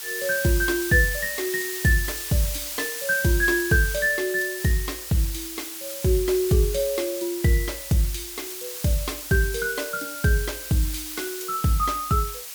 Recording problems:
background hiss; slope +3 dB per octave, SNR 7 dB

